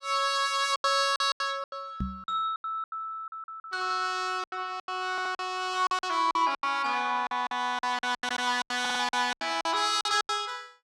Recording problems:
packet loss; 16% of the sound replaced, filled with silence
microphone bump; at 2 s; peak 0 dB vs average level
stutter; at 5 s, at 8 s and at 9 s

